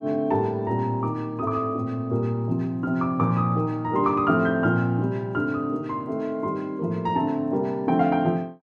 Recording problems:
none

